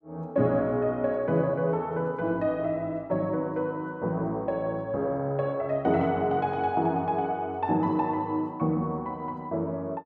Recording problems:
none

